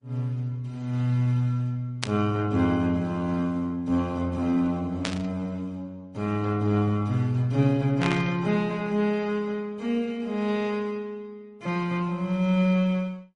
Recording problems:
codec artefacts; Opus, then MP3, log-spectral distance 2 dB
static burst; at 2 s, at 5 s and at 8 s; peak +1 dB vs average level

